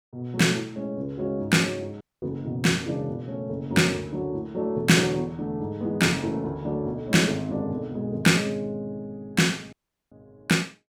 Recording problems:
dropout; at 2 s and at 9.5 s

